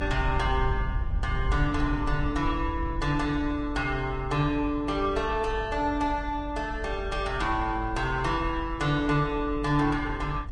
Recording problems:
codec artefacts; Vorbis, log-spectral distance 2 dB
rumble; below 70 Hz, strongest tone 48 Hz, SNR 7 dB

